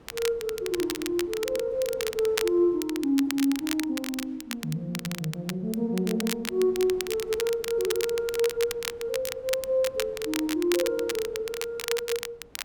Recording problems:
wind noise; below 690 Hz, SNR 24 dB
crackling; vinyl, SNR 8 dB

